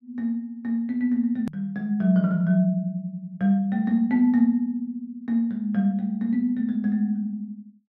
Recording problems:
hard cut with a click; at 1.5 s

